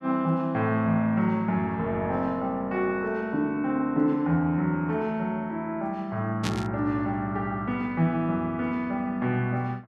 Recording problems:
static burst; at 6.5 s; peak -1 dB vs average level

